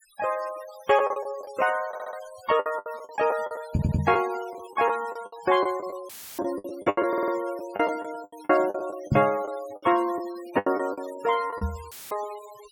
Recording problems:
noise reduction artefacts; signal-to-artefact ratio 18 dB
lost packets; 13% of the sound replaced, filled with the last packet
stutter; at 2 s, at 3.5 s and at 7 s
knock on the microphone; at 4 s, at 9 s and at 12 s; peak +7 dB vs average level
dropout; at 6 s and at 12 s; filled with static

